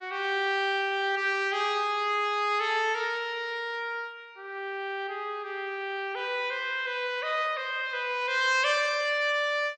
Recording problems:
lossy codec; MP3, log-spectral distance 2 dB, nothing above 6.7 kHz

